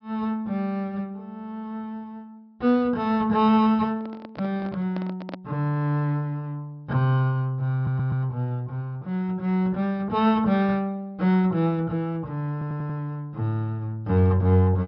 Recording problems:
treble cut off; nothing above 5.5 kHz
microphone handling noise; from 4 to 5.5 s; peak -7 dB vs average level
audio stuttering; at 8 s and at 13 s

